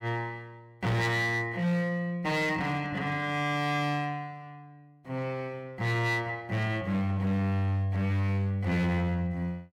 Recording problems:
distortion; hard clipping, signal-to-distortion ratio 10 dB

